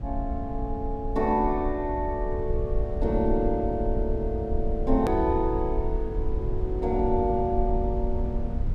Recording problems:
rumble; below 70 Hz, SNR 4 dB
edit click; at 5 s

